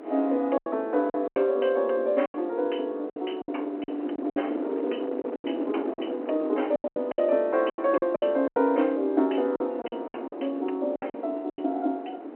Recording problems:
phone line; 240 Hz to 3.1 kHz, G.711
wind on the microphone; below 500 Hz, SNR 10 dB
packet loss; 12% of the sound replaced, filled with silence

